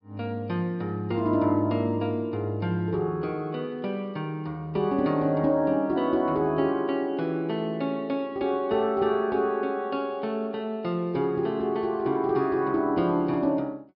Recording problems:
treble missing; nothing above 5.5 kHz

